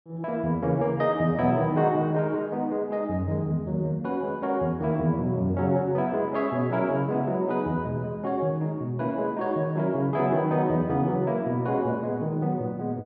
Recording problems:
none

